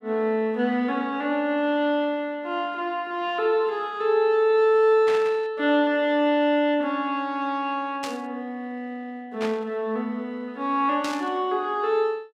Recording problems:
static burst; 4 times, first at 5 s; peak -5 dB vs average level

